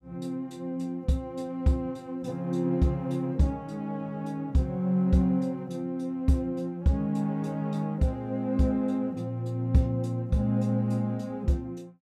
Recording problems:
none

